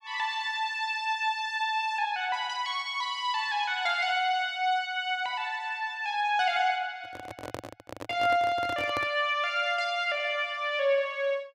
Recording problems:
handling noise; from 7 to 9 s; peak -4 dB vs average level

